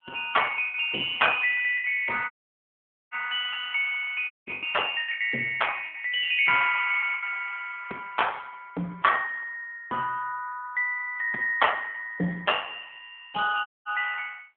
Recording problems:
phone line; 260 Hz to 3.4 kHz, AMR-NB
lost packets; 5% of the sound replaced, filled with the last packet
audio cutting out; at 2.5 s for 1 s, at 4.5 s and at 14 s

